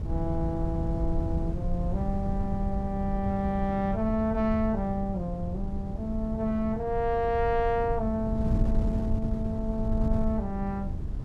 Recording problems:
wind on the microphone; below 120 Hz, SNR 3 dB

